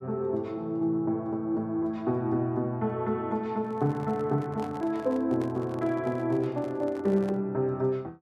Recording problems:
microphone handling noise; from 3.5 to 7.5 s; peak -9 dB vs average level

